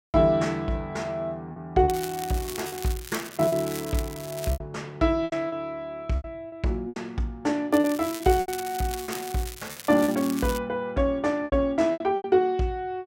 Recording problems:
lost packets; 8% of the sound replaced, filled with repeated pitch periods
crackling; from 2 to 4.5 s and from 7.5 to 11 s; loose cable, SNR 12 dB

